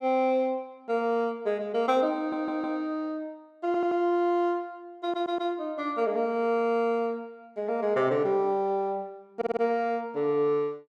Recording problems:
audio stuttering; 4 times, first at 2 s

